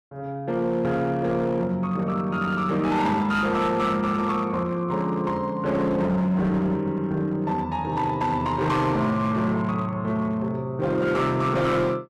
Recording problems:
distorted audio; hard clipping, signal-to-distortion ratio 12 dB

